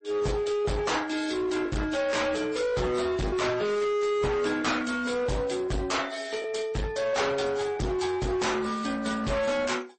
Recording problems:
codec artefacts; AAC, then MP3, log-spectral distance 4 dB, nothing above 8.2 kHz
distortion; hard clipping, uneven, signal-to-distortion ratio 6 dB
packet loss; 1.2% of the sound replaced, filled with the last packet

